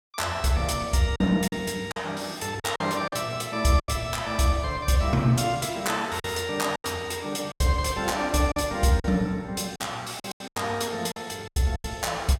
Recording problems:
packet loss; 8% of the sound replaced, filled with silence

